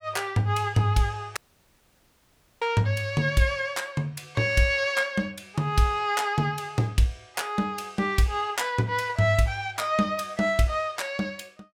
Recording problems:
audio cutting out; at 1.5 s for 1 s

